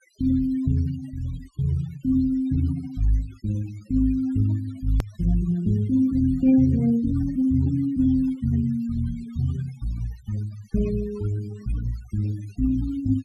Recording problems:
denoising artefacts; signal-to-artefact ratio 22 dB
edit click; at 5 s

